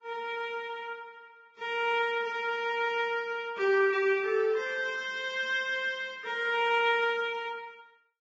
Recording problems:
lossy compression; Vorbis, log-spectral distance 2 dB

